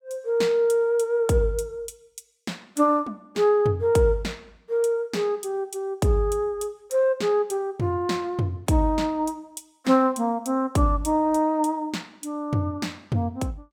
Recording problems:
none

